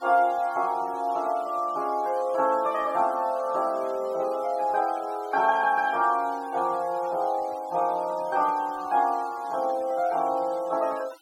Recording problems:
noise reduction artefacts; signal-to-artefact ratio 23 dB

